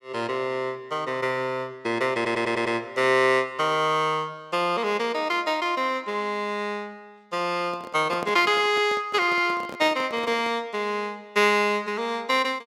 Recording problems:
audio stuttering; at 2 s
handling noise; from 7.5 to 11 s; peak -5 dB vs average level

